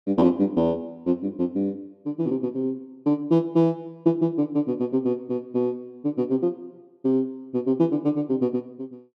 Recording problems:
none

